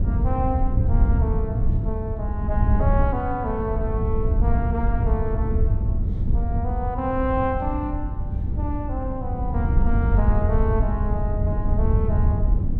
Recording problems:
wind noise; below 98 Hz, SNR -5 dB

